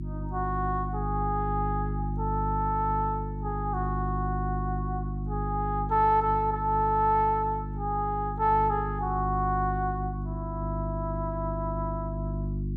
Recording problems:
hum; 50 Hz, harmonics up to 350 Hz, SNR 4 dB

